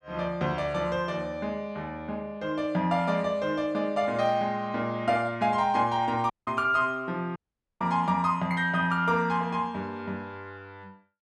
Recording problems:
dropout; at 6.5 s and at 7.5 s

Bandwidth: 12 kHz